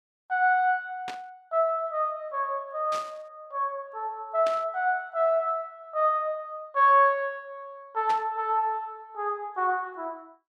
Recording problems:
static burst; 4 times, first at 1 s; peak -7 dB vs average level

